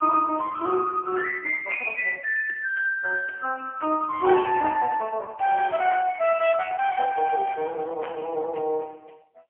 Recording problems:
phone line; 320 Hz to 3.1 kHz, AMR-NB, then MP3

